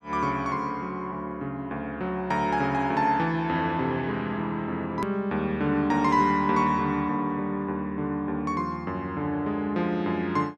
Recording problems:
hard cut with a click; at 5 s

